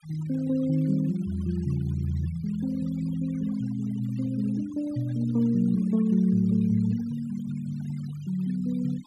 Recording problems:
noise reduction artefacts; signal-to-artefact ratio 23 dB

